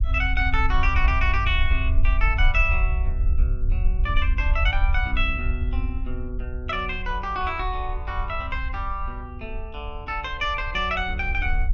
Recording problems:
low-frequency rumble; below 62 Hz, SNR 0 dB

